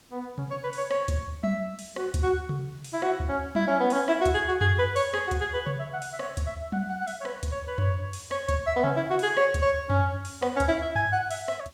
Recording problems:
hiss; SNR 30 dB

